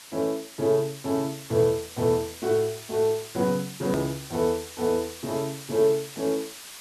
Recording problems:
hiss; slope +2 dB per octave, SNR 14 dB
edit click; at 4 s

